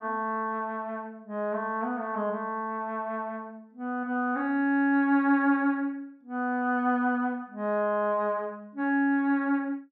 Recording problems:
none

